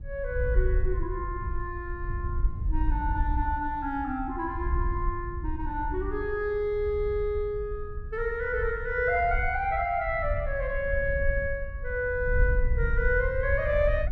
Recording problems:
wind on the microphone; below 66 Hz, SNR 4 dB

